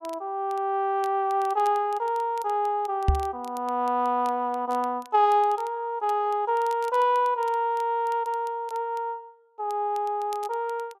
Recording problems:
crackling; vinyl, SNR 26 dB
microphone thump; at 3 s; peak +7 dB vs average level

